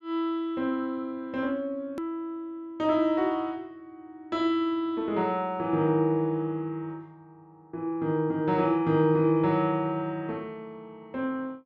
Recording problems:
hard cut with a click; at 2 s

